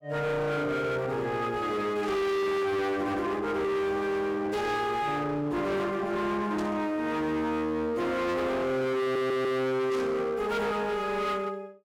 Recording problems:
distorted audio; hard clipping, uneven, signal-to-distortion ratio 7 dB
burst of static; 4 times, first at 2 s; peak -11 dB vs average level
audio stuttering; at 9 s

